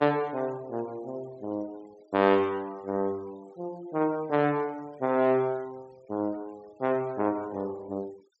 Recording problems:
low-pass filter; nothing above 7.9 kHz
denoising artefacts; signal-to-artefact ratio 26 dB

